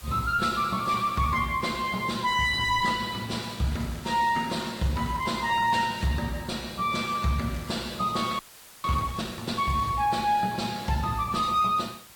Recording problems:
lossy compression; Vorbis, then AAC, log-spectral distance 4 dB
distortion; soft clipping, signal-to-distortion ratio 11 dB
background hiss; slope 0 dB per octave, SNR 21 dB
crackling; from 3.5 to 6 s and from 7.5 to 10 s; loose cable, SNR 22 dB
audio freezing; at 8.5 s

